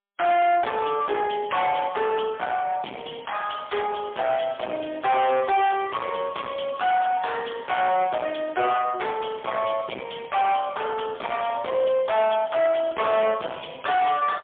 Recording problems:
phone line; 240 Hz to 3.5 kHz, AMR-NB, then MP3
distorted audio; hard clipping, uneven, signal-to-distortion ratio 6 dB

